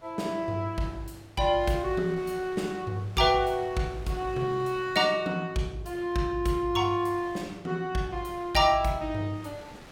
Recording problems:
wind on the microphone; below 2.1 kHz, SNR 22 dB

